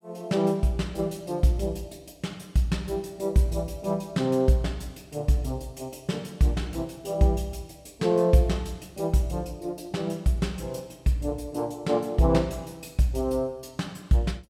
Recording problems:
none

